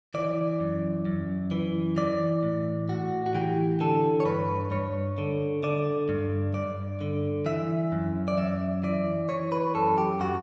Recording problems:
none

